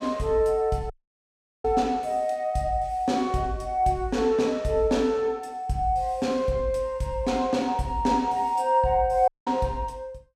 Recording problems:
audio cutting out; at 1 s for 0.5 s and at 9.5 s

